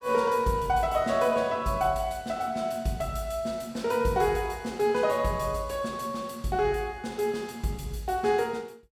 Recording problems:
none

